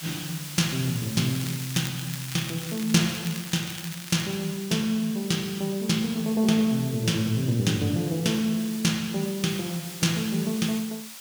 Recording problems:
background hiss; slope +2 dB per octave, SNR 12 dB
crackle; from 1.5 to 4.5 s; loose cable, SNR 13 dB

